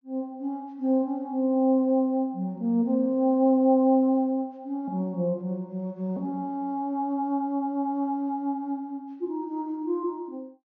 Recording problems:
low-pass filter; nothing above 6.8 kHz

